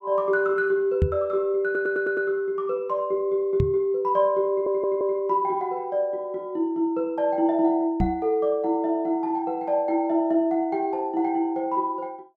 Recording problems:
microphone thump; at 1 s, at 3.5 s and at 8 s; peak +6 dB vs average level
stutter; at 1.5 s and at 4.5 s

